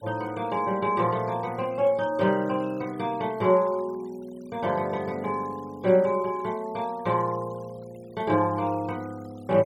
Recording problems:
noise reduction artefacts; signal-to-artefact ratio 25 dB

